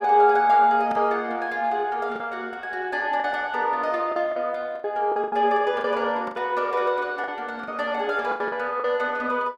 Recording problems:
lost packets; 8% of the sound replaced, filled with the last packet

